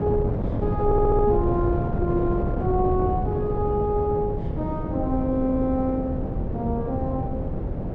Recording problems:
wind noise; below 280 Hz, SNR 2 dB
audio stuttering; at 1 s

